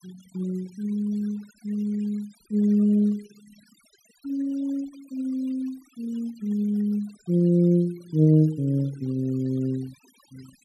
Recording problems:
noise reduction artefacts; signal-to-artefact ratio 27 dB

